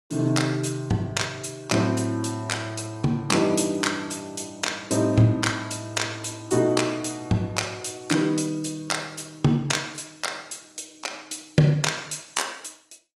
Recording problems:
lossy compression; AAC, log-spectral distance 4 dB

